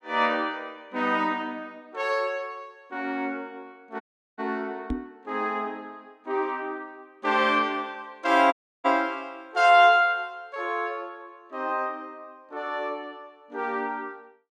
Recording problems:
audio cutting out; at 4 s and at 8.5 s
knock on the microphone; at 5 s; peak 0 dB vs average level

